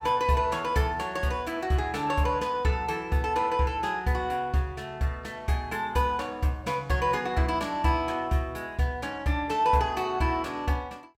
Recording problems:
none

